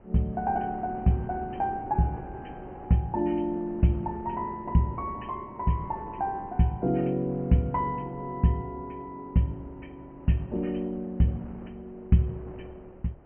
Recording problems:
treble missing; nothing above 3.1 kHz
wind noise; below 590 Hz, SNR 20 dB

